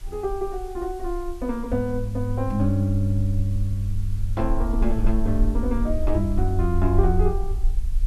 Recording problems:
hiss; slope -1 dB per octave, SNR 26 dB
rumble; below 44 Hz, strongest tone 26 Hz, SNR 4 dB

